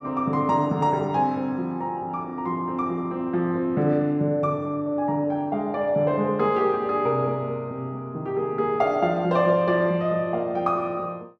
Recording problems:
none

